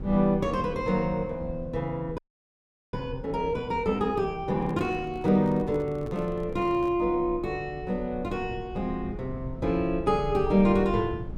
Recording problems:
rumble; below 140 Hz, SNR 14 dB
audio freezing; at 2 s for 1 s
microphone handling noise; from 4.5 to 7 s; peak -10 dB vs average level

